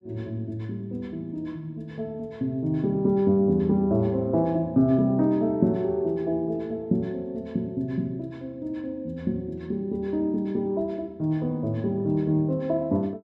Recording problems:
none

